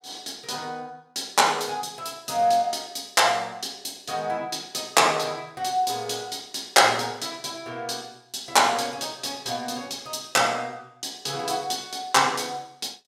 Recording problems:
none

